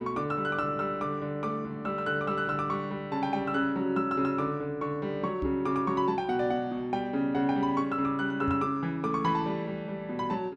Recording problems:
microphone thump; at 5.5 s and at 8.5 s; peak -2 dB vs average level

